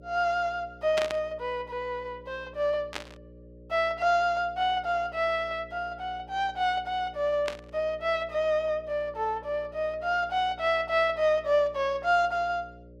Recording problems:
hum; 60 Hz, harmonics up to 600 Hz, SNR 22 dB
burst of static; at 1 s, at 3 s and at 7.5 s; peak 0 dB vs average level

